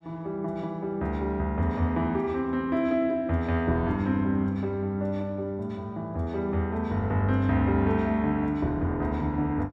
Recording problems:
none

